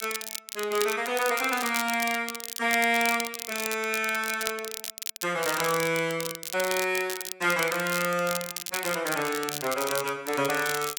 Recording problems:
crackling; vinyl, SNR 7 dB

